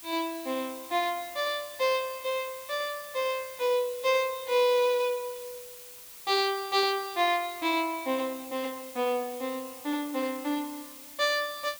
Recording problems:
hiss; slope +2 dB per octave, SNR 14 dB

